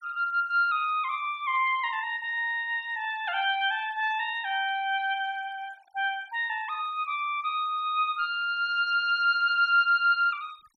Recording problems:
denoising artefacts; signal-to-artefact ratio 27 dB

